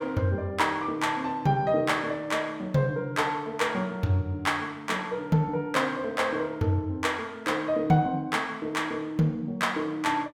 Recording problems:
none

